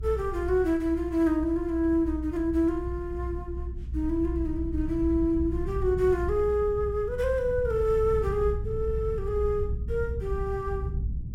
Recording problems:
rumble; below 90 Hz, strongest tone 60 Hz, SNR 7 dB

